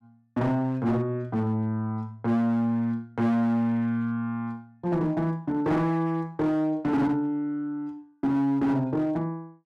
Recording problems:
distortion; hard clipping, uneven, signal-to-distortion ratio 11 dB

